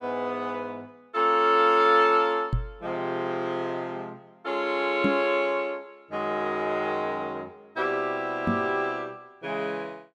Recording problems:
microphone bump; at 2.5 s, at 5 s and at 8.5 s; peak +4 dB vs average level

